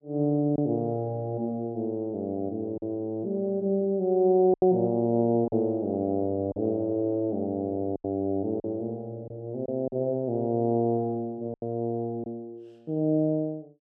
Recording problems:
lost packets; 4% of the sound replaced, filled with silence

